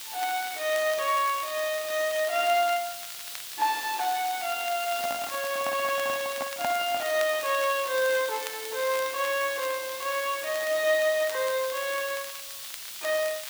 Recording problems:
hiss; slope +4 dB per octave, SNR 9 dB
crackling; vinyl, SNR 17 dB
microphone handling noise; from 5 to 7 s; peak 0 dB vs average level

